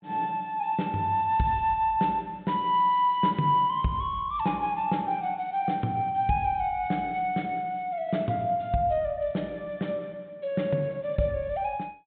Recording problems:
treble cut off; nothing above 4 kHz

